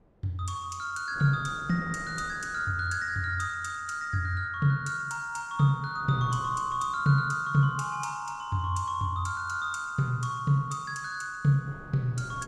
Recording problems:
wind on the microphone; below 460 Hz, SNR 20 dB

